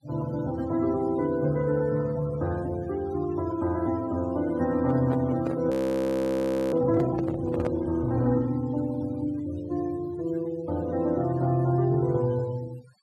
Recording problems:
noise reduction artefacts; signal-to-artefact ratio 21 dB
microphone handling noise; from 4.5 to 8 s; peak -1 dB vs average level
audio freezing; at 5.5 s for 1 s

